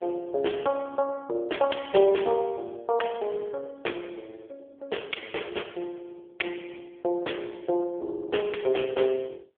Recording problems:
telephone audio; 300 Hz to 3.4 kHz, AMR-NB

